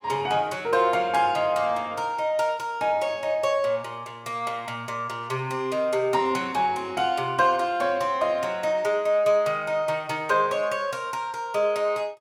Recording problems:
none

